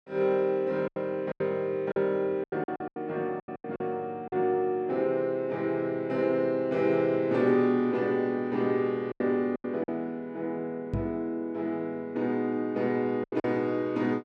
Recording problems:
packet loss; 7% of the sound replaced, filled with silence
microphone bump; at 11 s; peak +1 dB vs average level

